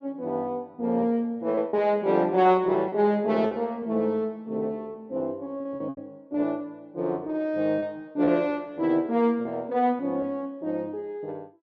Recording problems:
packet loss; 6% of the sound replaced, filled with repeated pitch periods

